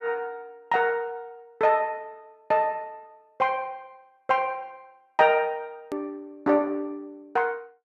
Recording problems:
click at an edit; at 6 s

